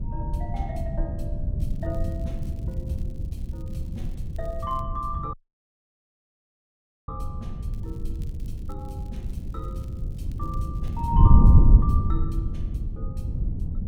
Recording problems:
wind noise; below 100 Hz, SNR -10 dB
crackle; from 1.5 to 5 s and from 7.5 to 11 s; loose cable, SNR 23 dB
dropout; at 5.5 s for 2 s

